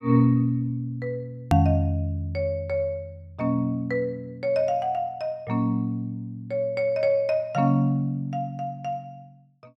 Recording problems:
edit click; at 1.5 s

